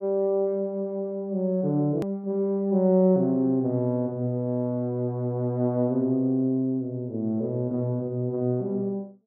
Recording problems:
hard cut with a click; at 2 s

